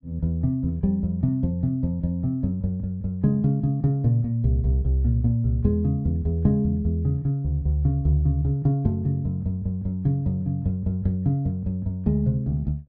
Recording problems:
none

